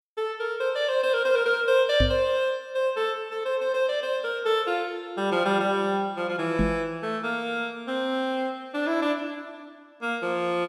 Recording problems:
microphone thump; at 2 s and at 6.5 s; peak +5 dB vs average level

